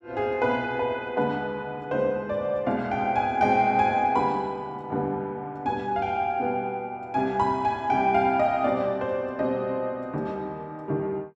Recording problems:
none

